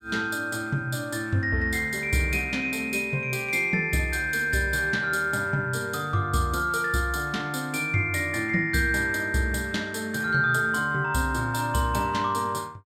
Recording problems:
none

